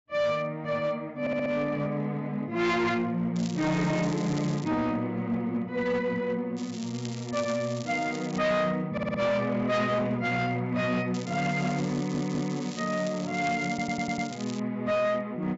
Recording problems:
treble cut off; nothing above 8 kHz
distortion; hard clipping, uneven, signal-to-distortion ratio 11 dB
audio stuttering; 4 times, first at 1 s
crackle; from 3.5 to 4.5 s, from 6.5 to 8.5 s and from 11 to 15 s; loose cable, SNR 15 dB

